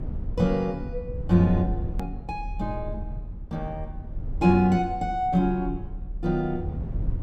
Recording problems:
low-frequency rumble; below 88 Hz, SNR 9 dB
edit click; at 2 s

